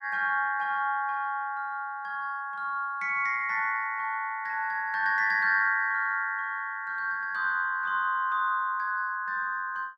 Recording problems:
none

